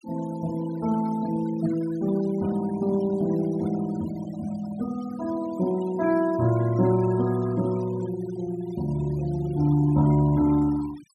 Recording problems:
denoising artefacts; signal-to-artefact ratio 19 dB

